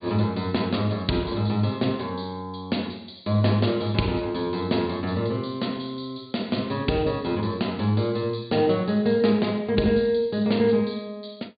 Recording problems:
treble missing; nothing above 4.7 kHz

